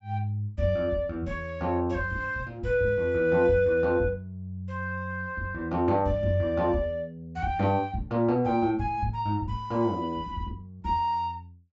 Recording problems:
treble cut off; nothing above 8 kHz

